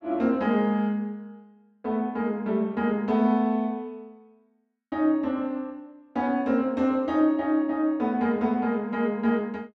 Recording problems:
none

